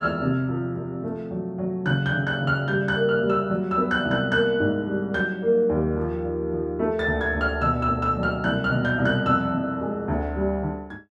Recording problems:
none

